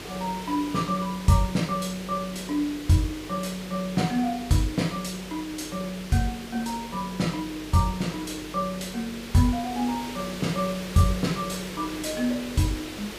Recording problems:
hum; 50 Hz, harmonics up to 500 Hz, SNR 20 dB
hiss; SNR 11 dB

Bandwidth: 15 kHz